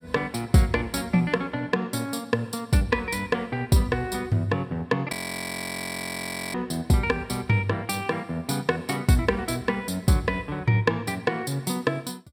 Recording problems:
audio freezing; at 5 s for 1.5 s

